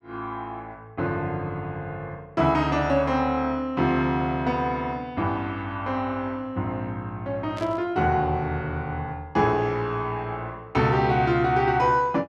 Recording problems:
static burst; at 7.5 s; peak -12 dB vs average level

